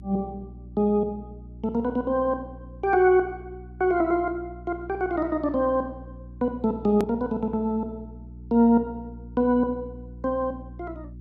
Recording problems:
hum; 60 Hz, harmonics up to 360 Hz, SNR 18 dB
click at an edit; at 7 s

